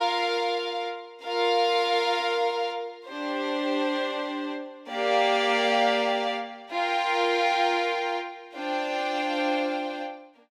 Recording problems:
none

